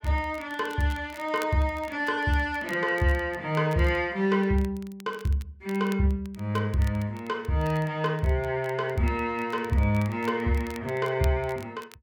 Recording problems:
crackling; vinyl, SNR 23 dB

